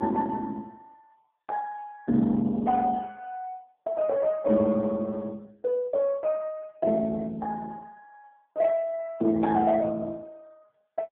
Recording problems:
telephone audio; 170 Hz to 2.2 kHz, AMR-NB

